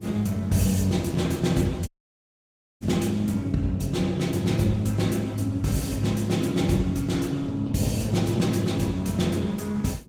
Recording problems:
codec artefacts; Opus, log-spectral distance 4 dB
wind on the microphone; below 300 Hz, SNR 21 dB
dropout; at 2 s for 1 s

